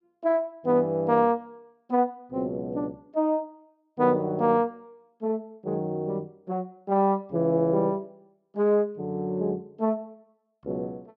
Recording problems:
none

